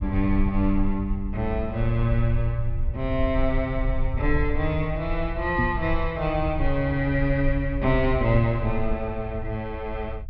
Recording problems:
low-pass filter; nothing above 5.5 kHz
low-frequency rumble; below 64 Hz, strongest tone 20 Hz, SNR 5 dB
microphone bump; at 5.5 s; peak +3 dB vs average level

